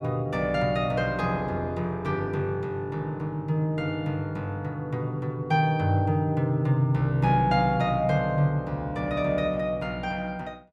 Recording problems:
none

